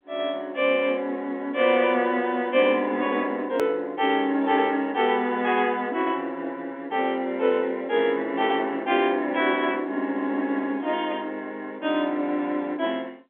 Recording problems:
phone line; 220 Hz to 3.5 kHz, G.711
hard cut with a click; at 3.5 s

